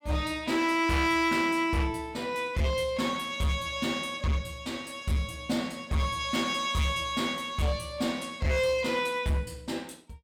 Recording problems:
distortion; hard clipping, signal-to-distortion ratio 11 dB

